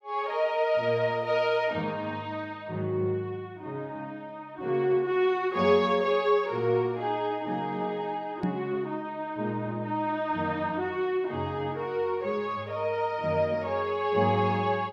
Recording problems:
knock on the microphone; at 8.5 s; peak +3 dB vs average level

